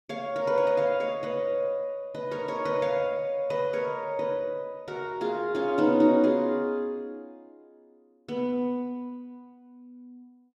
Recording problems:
none

